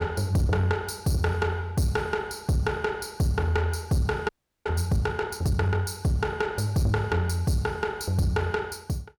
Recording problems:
distorted audio; soft clipping, signal-to-distortion ratio 11 dB
audio freezing; at 4.5 s

